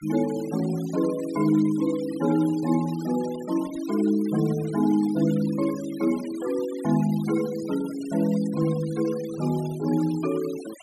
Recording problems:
denoising artefacts; signal-to-artefact ratio 18 dB

